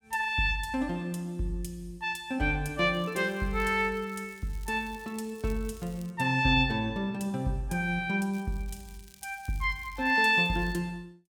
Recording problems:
crackling; from 3 to 6 s and from 8.5 to 11 s; loose cable, SNR 26 dB

